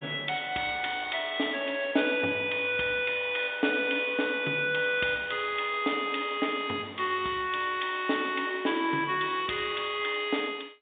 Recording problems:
telephone audio; 220 Hz to 3.7 kHz, G.711

